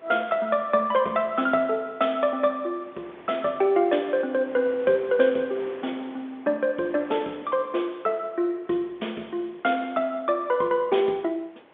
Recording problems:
phone line; 240 Hz to 3.6 kHz, G.711
wind noise; below 1.7 kHz, SNR 24 dB

